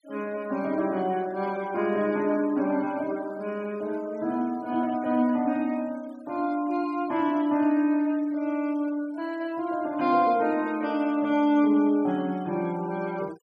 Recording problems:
noise reduction artefacts; signal-to-artefact ratio 25 dB

